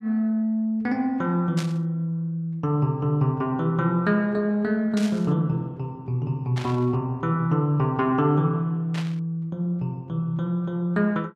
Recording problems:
static burst; 4 times, first at 1.5 s; peak -6 dB vs average level

